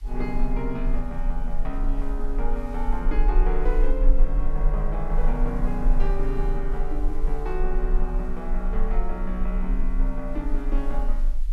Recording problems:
background hiss; slope 0 dB per octave, SNR 27 dB
rumble; below 34 Hz, strongest tone 20 Hz, SNR -4 dB

